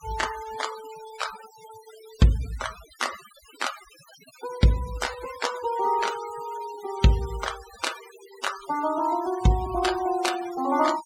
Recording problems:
noise reduction artefacts; signal-to-artefact ratio 14 dB

